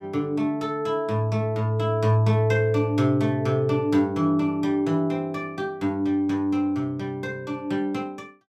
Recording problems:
none

